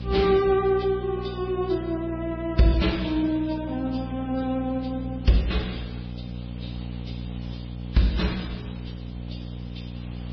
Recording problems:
lossy codec; MP3, then Vorbis, log-spectral distance 4 dB, nothing above 5 kHz
hum; 60 Hz, harmonics up to 780 Hz, SNR 10 dB
hiss; SNR 26 dB

